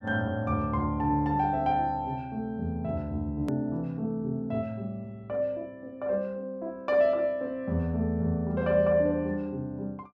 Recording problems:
hard cut with a click; at 3.5 s

